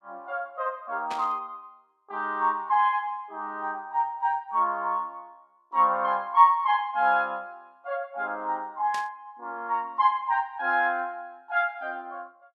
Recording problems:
burst of static; at 1 s and at 9 s; peak -8 dB vs average level

